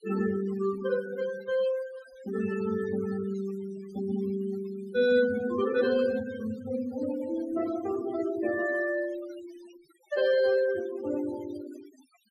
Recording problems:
noise reduction artefacts; signal-to-artefact ratio 16 dB

